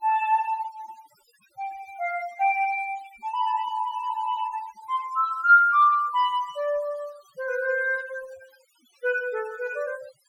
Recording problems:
noise reduction artefacts; signal-to-artefact ratio 22 dB

